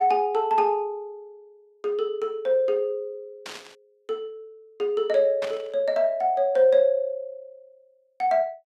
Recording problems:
static burst; at 3.5 s and at 5.5 s; peak -7 dB vs average level

